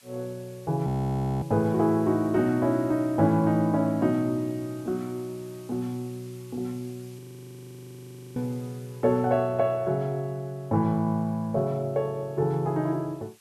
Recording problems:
background hiss; slope +2 dB per octave, SNR 27 dB
audio freezing; at 1 s for 0.5 s and at 7 s for 1 s

